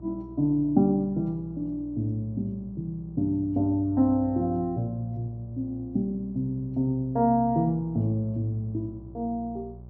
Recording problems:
hum; 60 Hz, harmonics up to 600 Hz, SNR 18 dB

